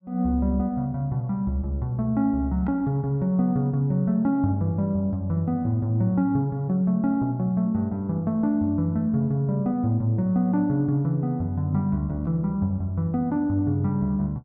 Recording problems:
none

